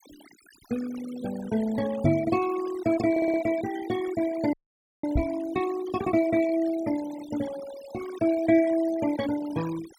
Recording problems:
noise reduction artefacts; signal-to-artefact ratio 15 dB
microphone thump; at 2 s and at 5 s; peak +6 dB vs average level
stutter; at 3 s
audio freezing; at 4.5 s for 0.5 s

